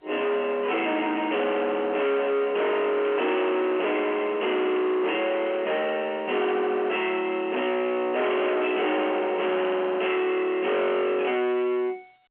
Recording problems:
telephone audio; 580 Hz to 2.7 kHz, G.711
distortion; soft clipping, signal-to-distortion ratio 6 dB
burst of static; 4 times, first at 3 s; peak -13 dB vs average level

